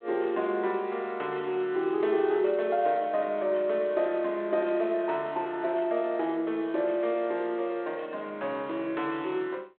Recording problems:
telephone audio; 280 Hz to 3.6 kHz, G.726

